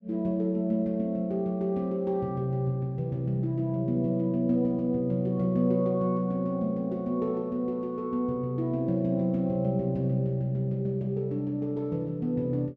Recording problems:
none

